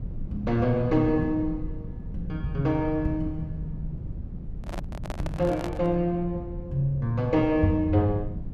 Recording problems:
rumble; below 140 Hz, SNR 11 dB
handling noise; from 4.5 to 6 s; peak -5 dB vs average level

